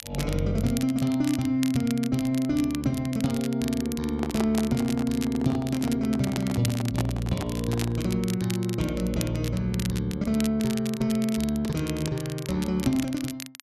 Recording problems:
crackle; vinyl, SNR 13 dB
microphone handling noise; from 4 to 8 s; peak -1 dB vs average level

